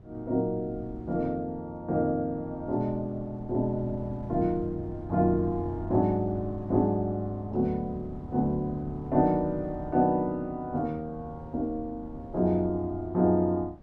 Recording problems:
wind noise; below 170 Hz, SNR 16 dB

